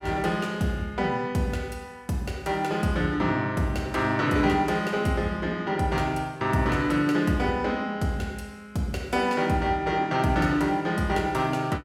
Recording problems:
none

